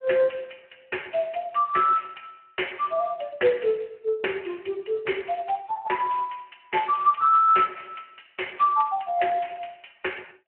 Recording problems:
phone line; 280 Hz to 3.1 kHz, Speex

